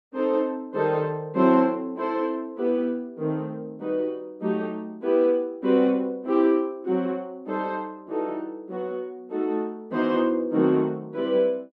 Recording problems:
none

